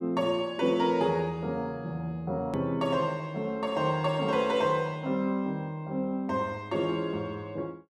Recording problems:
edit click; at 2.5 s

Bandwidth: 12.5 kHz